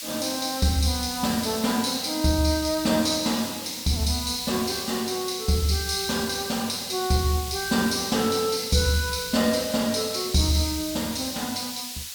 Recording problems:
hiss; slope +5 dB per octave, SNR 9 dB

